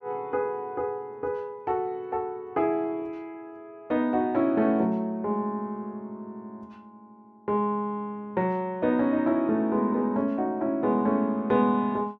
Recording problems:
none

